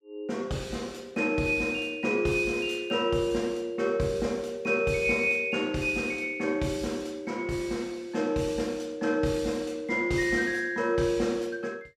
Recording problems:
none

